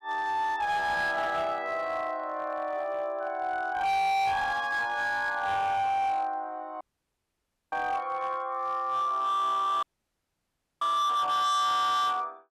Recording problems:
distortion; hard clipping, signal-to-distortion ratio 8 dB
dropout; at 7 s for 1 s and at 10 s for 1 s

